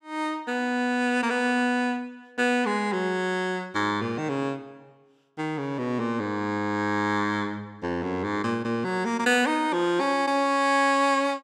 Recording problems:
none

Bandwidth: 16 kHz